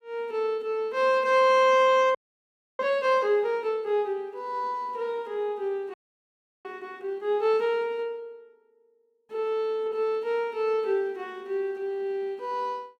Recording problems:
frozen audio; at 2 s for 0.5 s and at 6 s for 0.5 s

